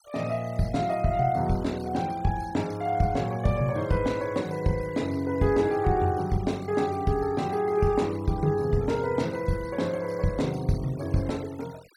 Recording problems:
denoising artefacts; signal-to-artefact ratio 22 dB

